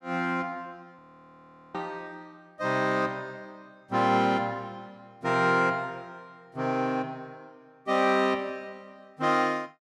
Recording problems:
audio freezing; at 1 s for 1 s

